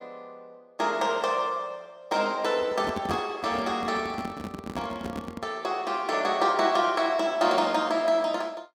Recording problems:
microphone handling noise; from 2.5 to 5.5 s; peak -3 dB vs average level

